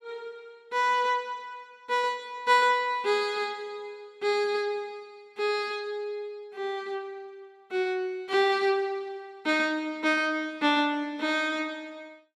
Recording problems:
none

